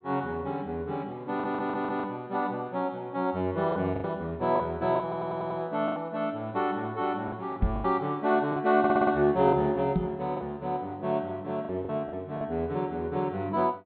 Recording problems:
treble missing; nothing above 4.3 kHz
lost packets; 6% of the sound replaced, filled with the last packet
stutter; at 1.5 s, at 5 s and at 9 s
microphone thump; at 7.5 s and at 10 s; peak +6 dB vs average level

